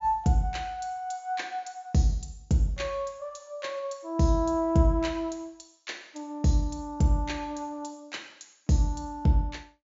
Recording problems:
treble cut off; nothing above 7.3 kHz

